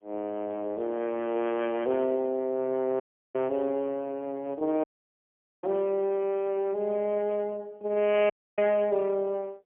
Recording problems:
phone line; 240 Hz to 3.3 kHz, AMR-NB, then MP3
audio cutting out; at 3 s, at 5 s for 1 s and at 8.5 s

